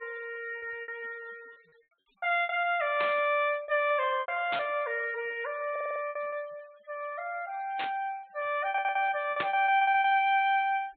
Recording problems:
treble cut off; nothing above 4 kHz
noise reduction artefacts; signal-to-artefact ratio 28 dB
packet loss; 11% of the sound replaced, filled with repeated pitch periods
burst of static; 4 times, first at 3 s; peak 0 dB vs average level
stutter; at 5.5 s and at 8.5 s

